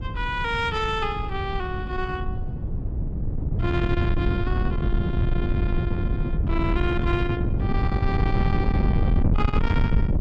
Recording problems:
distortion; soft clipping, signal-to-distortion ratio 12 dB
wind on the microphone; below 150 Hz, SNR -3 dB

